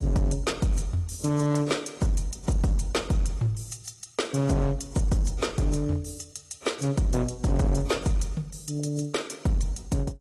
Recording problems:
lossy compression; AAC, then AAC, log-spectral distance 4 dB, nothing above 11.3 kHz
distortion; hard clipping, signal-to-distortion ratio 10 dB

